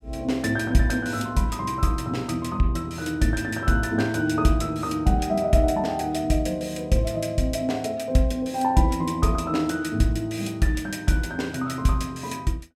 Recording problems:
none

